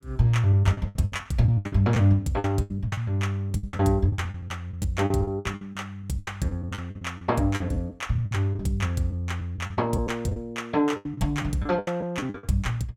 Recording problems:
packet loss; 16% of the sound replaced, filled with the last packet

